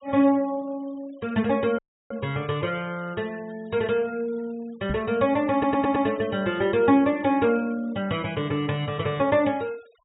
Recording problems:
low-pass filter; nothing above 4 kHz
noise reduction artefacts; signal-to-artefact ratio 26 dB
audio cutting out; at 2 s
microphone bump; at 5 s; peak -1 dB vs average level
stutter; at 5.5 s

